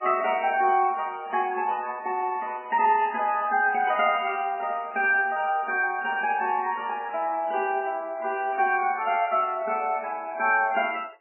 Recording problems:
codec artefacts; MP3, log-spectral distance 4 dB, nothing above 2.8 kHz

